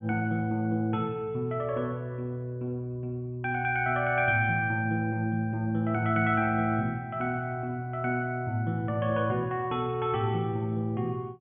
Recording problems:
low-pass filter; nothing above 3.4 kHz

